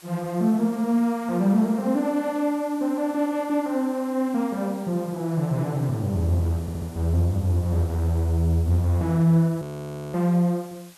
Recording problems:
hiss; slope 0 dB per octave, SNR 24 dB
audio stuttering; at 6.5 s
frozen audio; at 9.5 s for 0.5 s

